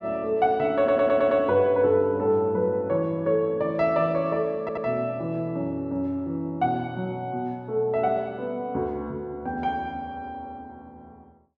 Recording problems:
stutter; at 1 s and at 4.5 s

